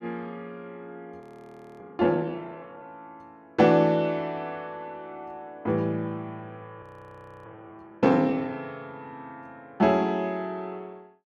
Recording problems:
audio freezing; at 1 s for 0.5 s and at 7 s for 0.5 s

